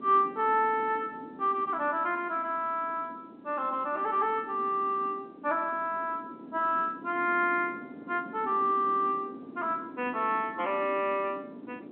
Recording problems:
telephone audio; 220 Hz to 3.5 kHz, G.711
wind on the microphone; below 370 Hz, SNR 16 dB

